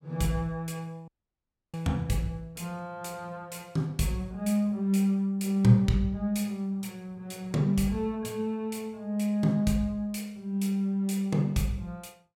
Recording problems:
dropout; at 1 s for 0.5 s

